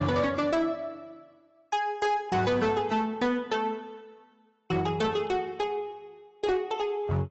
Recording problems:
lossy compression; AAC, log-spectral distance 2 dB, nothing above 7.6 kHz
distorted audio; hard clipping, signal-to-distortion ratio 11 dB

